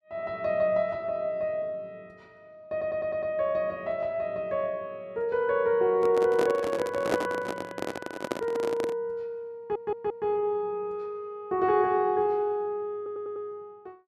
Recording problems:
audio stuttering; at 2.5 s, at 9.5 s and at 13 s
microphone handling noise; from 6 to 9 s; peak +5 dB vs average level

